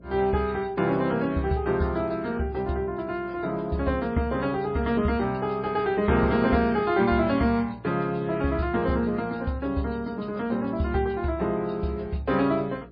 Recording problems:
codec artefacts; MP3, log-spectral distance 2 dB, nothing above 4.4 kHz
hum; 60 Hz, harmonics up to 660 Hz, SNR 23 dB

